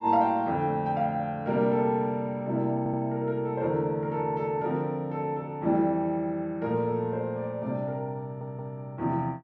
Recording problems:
stutter; at 3 s and at 8 s

